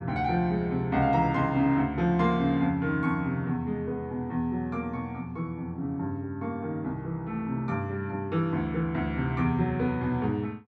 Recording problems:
none

